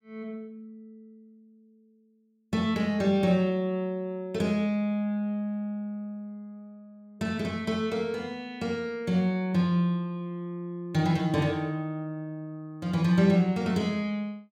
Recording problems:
none

